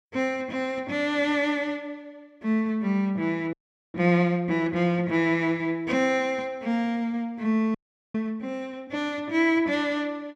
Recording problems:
audio freezing; at 3.5 s and at 8 s

